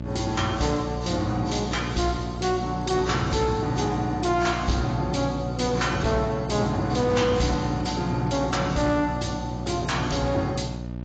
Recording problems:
codec artefacts; AAC, log-spectral distance 5 dB, nothing above 7.6 kHz
distortion; soft clipping, signal-to-distortion ratio 12 dB
mains hum; 60 Hz, harmonics up to 900 Hz, SNR 8 dB

